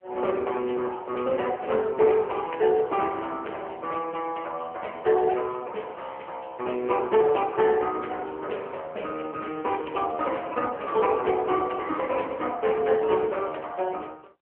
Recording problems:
phone line; 300 Hz to 3.1 kHz, AMR-NB

